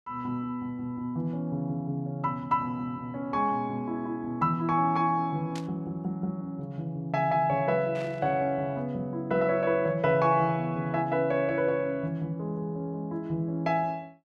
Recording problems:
burst of static; at 5.5 s and at 8 s; peak -10 dB vs average level

